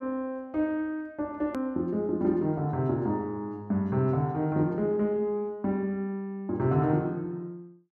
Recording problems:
hard cut with a click; at 1.5 s

